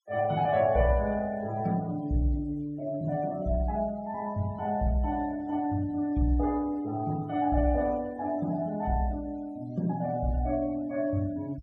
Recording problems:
denoising artefacts; signal-to-artefact ratio 25 dB

